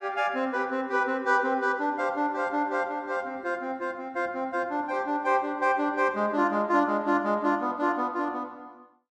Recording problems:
none

